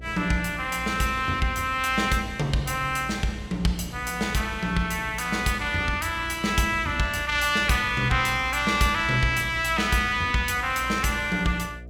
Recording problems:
hum; 60 Hz, harmonics up to 720 Hz, SNR 17 dB

